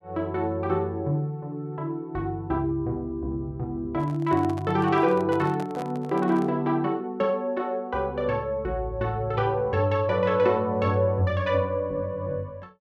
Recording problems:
microphone handling noise; from 4 to 6.5 s; peak -8 dB vs average level

